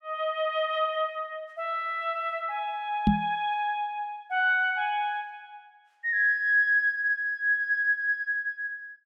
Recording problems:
knock on the microphone; at 3 s; peak +7 dB vs average level

